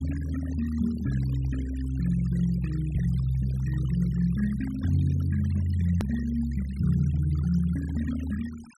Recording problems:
noise reduction artefacts; signal-to-artefact ratio 20 dB
hard cut with a click; at 6 s

